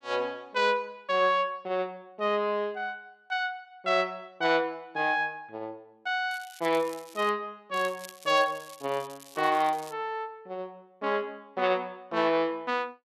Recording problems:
crackle; at 6.5 s and from 7.5 to 10 s; loose cable, SNR 20 dB

